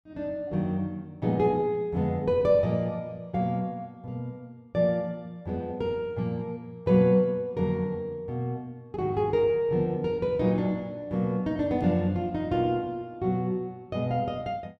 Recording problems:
none

